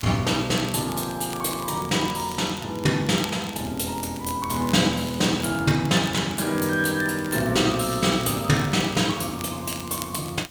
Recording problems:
hiss; slope -2 dB per octave, SNR 24 dB
crackling; vinyl, SNR 18 dB

